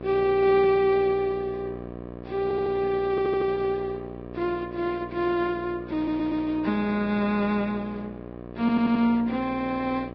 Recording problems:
lossy codec; Vorbis, log-spectral distance 2 dB
electrical hum; 60 Hz, harmonics up to 1.7 kHz, SNR 13 dB
audio stuttering; 4 times, first at 2.5 s

